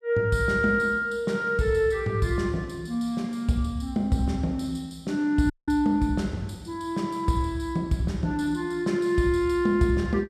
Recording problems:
audio cutting out; at 5.5 s

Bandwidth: 14 kHz